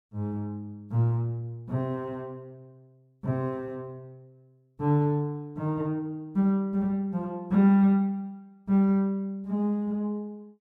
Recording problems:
none

